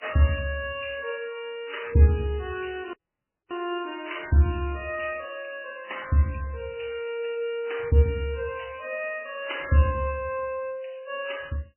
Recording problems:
lossy codec; MP3, log-spectral distance 7 dB, nothing above 2.9 kHz
dropout; at 3 s for 0.5 s

